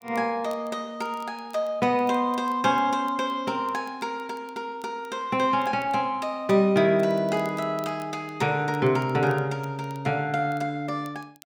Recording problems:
crackle; vinyl, SNR 30 dB

